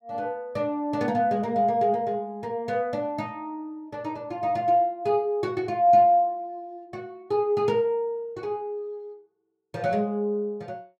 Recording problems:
none

